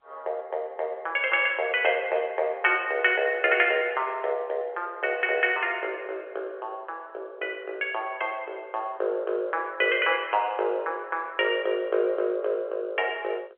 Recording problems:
phone line; 320 Hz to 3.3 kHz, G.711

